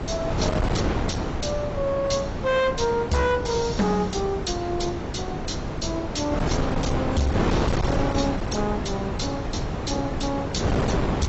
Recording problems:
codec artefacts; AAC, log-spectral distance 3 dB, nothing above 7.3 kHz
distorted audio; hard clipping, uneven, signal-to-distortion ratio 11 dB
mains hum; 60 Hz, harmonics up to 1.6 kHz, SNR 24 dB
wind noise; below 630 Hz, SNR 0 dB

